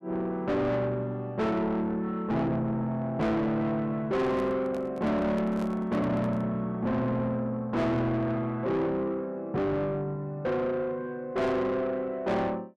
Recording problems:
distorted audio; soft clipping, signal-to-distortion ratio 7 dB
microphone handling noise; from 4 to 6.5 s; peak -6 dB vs average level

